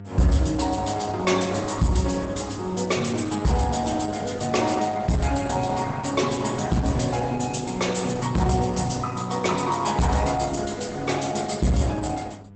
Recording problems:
codec artefacts; Opus, log-spectral distance 6 dB, nothing above 8 kHz
distorted audio; hard clipping, signal-to-distortion ratio 11 dB
electrical hum; 50 Hz, harmonics up to 900 Hz, SNR 16 dB

